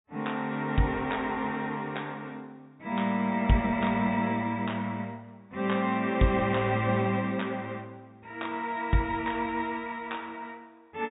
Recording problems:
low-pass filter; nothing above 4 kHz

